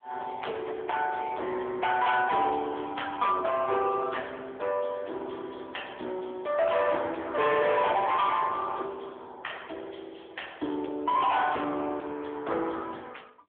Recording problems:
phone line; 260 Hz to 3.5 kHz, AMR-NB
distorted audio; hard clipping, signal-to-distortion ratio 11 dB

